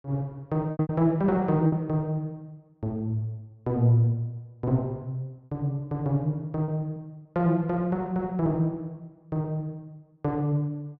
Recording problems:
packet loss; 3% of the sound replaced, filled with repeated pitch periods

